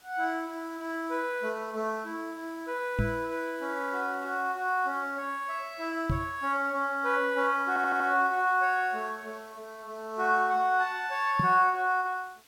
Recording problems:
hiss; slope 0 dB per octave, SNR 27 dB
microphone bump; at 3 s, at 6 s and at 11 s; peak +3 dB vs average level
stutter; at 7.5 s

